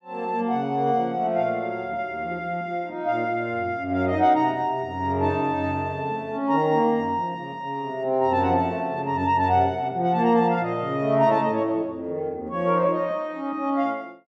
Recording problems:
none

